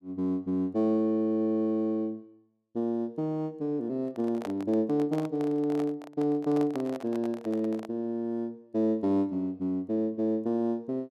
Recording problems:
handling noise; from 4 to 8 s; peak -5 dB vs average level

